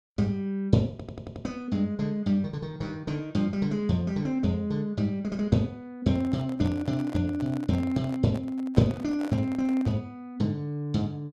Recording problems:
audio stuttering; at 1 s
microphone handling noise; from 6 to 10 s; peak -8 dB vs average level

